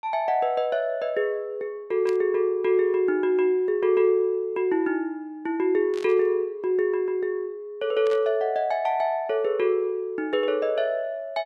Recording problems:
burst of static; at 2 s, at 6 s and at 8 s; peak -12 dB vs average level

